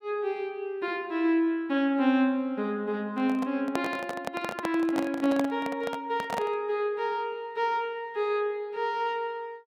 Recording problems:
handling noise; from 3 to 6.5 s; peak +1 dB vs average level

